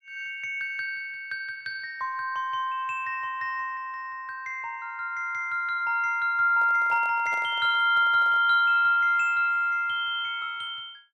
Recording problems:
handling noise; from 6.5 to 8.5 s; peak -12 dB vs average level

